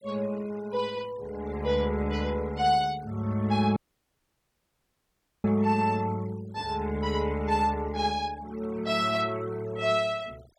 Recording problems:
denoising artefacts; signal-to-artefact ratio 23 dB
audio cutting out; at 4 s for 1.5 s

